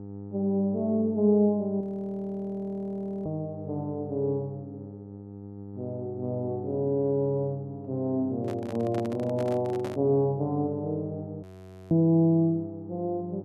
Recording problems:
electrical hum; 50 Hz, harmonics up to 900 Hz, SNR 14 dB
frozen audio; at 2 s for 1.5 s and at 11 s
handling noise; from 8.5 to 10 s; peak -6 dB vs average level

